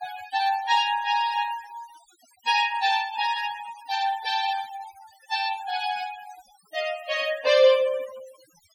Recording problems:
noise reduction artefacts; signal-to-artefact ratio 18 dB

